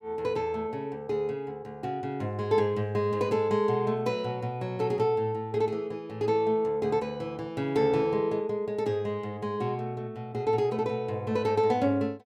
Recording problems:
none

